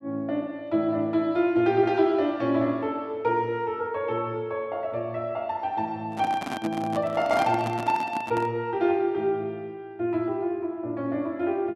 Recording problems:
handling noise; from 6 to 8.5 s; peak -1 dB vs average level

